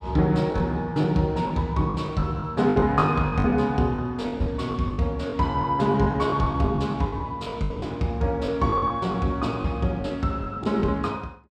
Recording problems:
packet loss; 12% of the sound replaced, filled with the last packet

